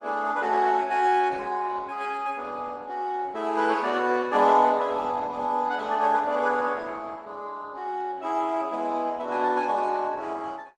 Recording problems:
codec artefacts; Opus, log-spectral distance 3 dB

